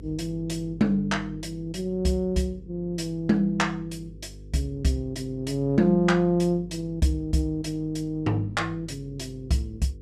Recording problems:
mains hum; 50 Hz, harmonics up to 500 Hz, SNR 18 dB

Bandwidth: 13 kHz